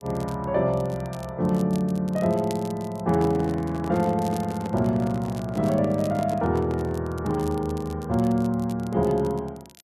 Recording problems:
crackling; vinyl, SNR 23 dB
microphone handling noise; from 3 to 7 s; peak -6 dB vs average level

